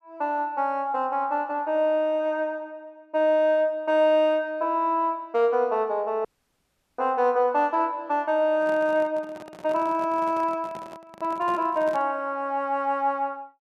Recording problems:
audio cutting out; at 6.5 s for 0.5 s
handling noise; from 8.5 to 12 s; peak -11 dB vs average level

